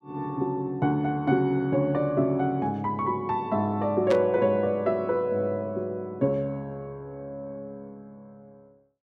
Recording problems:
burst of static; at 4 s; peak -5 dB vs average level

